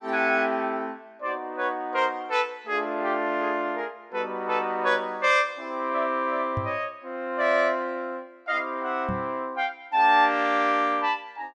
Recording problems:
microphone bump; at 6.5 s and at 9 s; peak -1 dB vs average level

